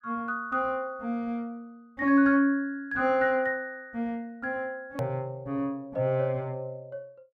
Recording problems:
hard cut with a click; at 5 s

